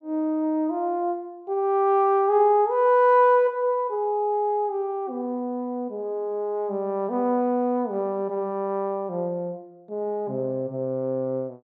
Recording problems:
none

